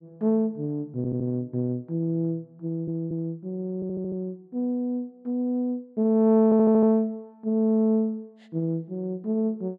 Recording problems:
audio stuttering; 4 times, first at 1 s

